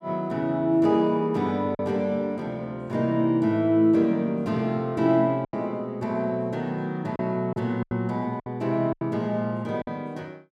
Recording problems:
lost packets; 4% of the sound replaced, filled with silence

